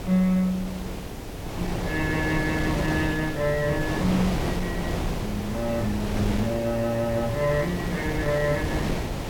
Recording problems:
background hiss; slope +2 dB per octave, SNR 21 dB
wind noise; below 650 Hz, SNR 3 dB

